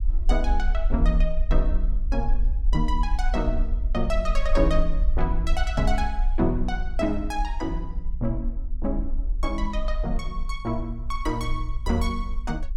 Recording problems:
rumble; below 44 Hz, SNR -1 dB

